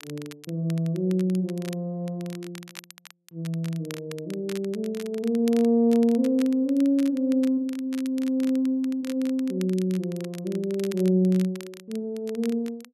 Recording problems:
crackle; vinyl, SNR 20 dB

